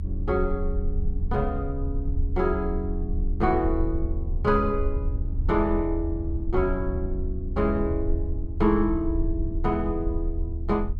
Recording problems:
low-frequency rumble; below 74 Hz, strongest tone 30 Hz, SNR 3 dB

